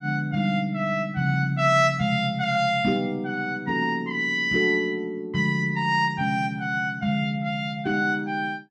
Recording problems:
none

